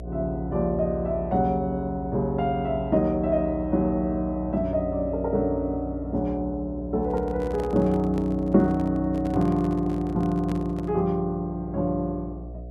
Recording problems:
hum; 60 Hz, harmonics up to 720 Hz, SNR 12 dB
handling noise; from 7 to 11 s; peak -6 dB vs average level

